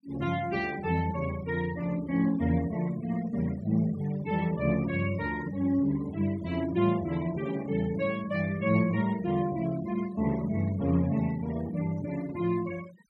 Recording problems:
noise reduction artefacts; signal-to-artefact ratio 19 dB

